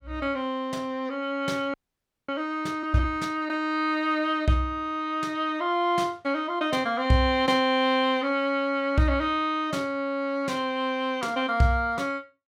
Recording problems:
audio freezing; at 1.5 s for 0.5 s

